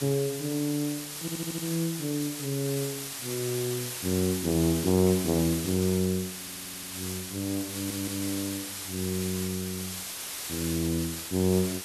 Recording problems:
background hiss; slope +1 dB per octave, SNR 5 dB
stutter; at 1 s, at 6.5 s and at 7.5 s

